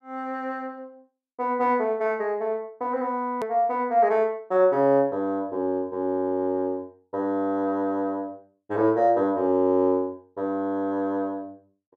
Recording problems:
click at an edit; at 3.5 s

